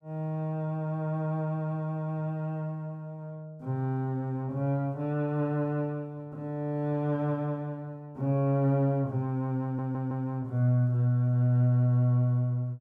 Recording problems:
stutter; at 9.5 s

